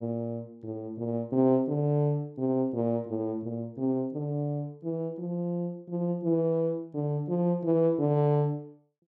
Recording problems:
none

